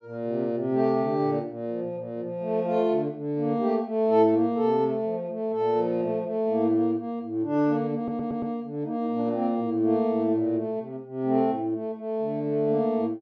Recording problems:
stutter; at 8 s

